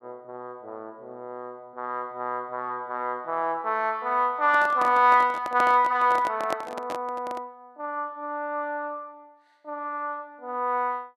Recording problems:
handling noise; from 4.5 to 7.5 s; peak -1 dB vs average level

